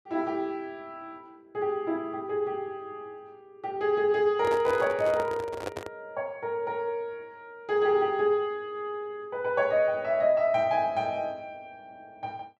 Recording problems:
handling noise; from 4.5 to 6 s; peak -1 dB vs average level

